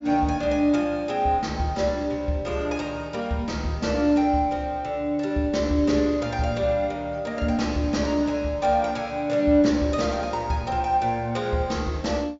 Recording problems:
treble missing; nothing above 8 kHz

